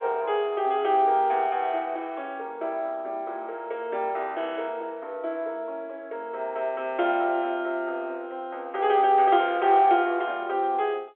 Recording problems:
phone line; 300 Hz to 3.6 kHz, G.711

